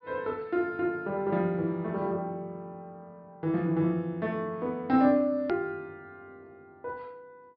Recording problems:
treble cut off; nothing above 5.5 kHz
click at an edit; at 5.5 s

